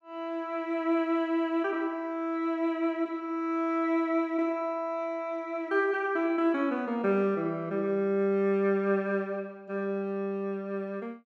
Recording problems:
none

